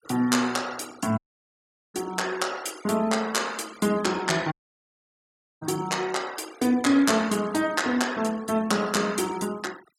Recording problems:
denoising artefacts; signal-to-artefact ratio 19 dB
dropout; at 1 s for 1 s and at 4.5 s for 1 s

